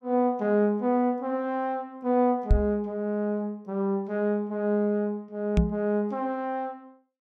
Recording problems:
knock on the microphone; at 2.5 s and at 5.5 s; peak +9 dB vs average level

